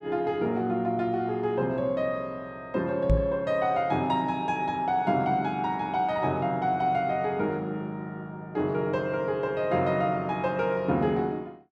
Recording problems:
microphone bump; at 3 s; peak +7 dB vs average level

